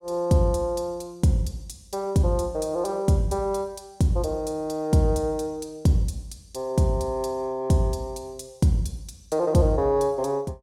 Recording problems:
none

